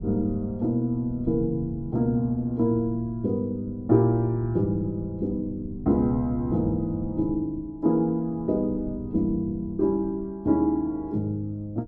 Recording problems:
low-frequency rumble; below 180 Hz, SNR 16 dB

